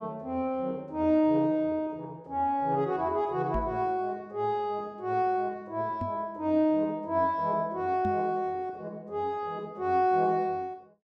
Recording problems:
microphone bump; at 3.5 s, at 6 s and at 8 s; peak -2 dB vs average level

